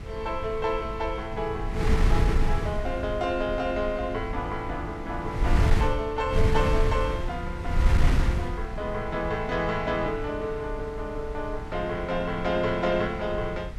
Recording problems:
wind on the microphone; below 92 Hz, SNR 2 dB

